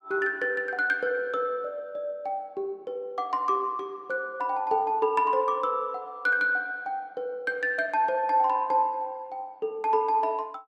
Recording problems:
none

